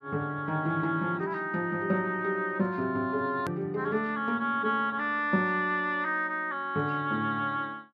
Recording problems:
edit click; at 3.5 s

